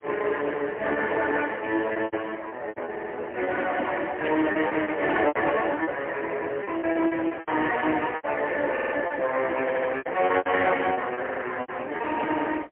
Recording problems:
telephone audio; 280 Hz to 3.2 kHz, AMR-NB, then MP3
lost packets; 12% of the sound replaced, filled with repeated pitch periods
stutter; 4 times, first at 3 s
static burst; at 4 s; peak -5 dB vs average level

